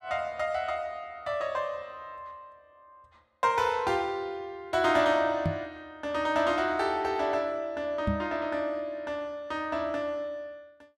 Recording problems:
knock on the microphone; at 5.5 s and at 8 s; peak +4 dB vs average level

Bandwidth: 14 kHz